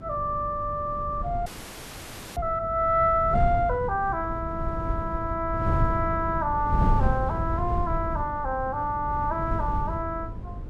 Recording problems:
mains hum; 50 Hz, harmonics up to 550 Hz, SNR 16 dB
wind on the microphone; below 130 Hz, SNR 5 dB
audio freezing; at 1.5 s for 1 s

